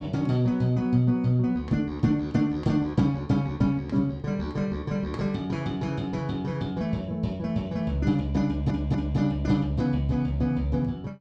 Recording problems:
stutter; at 8.5 s

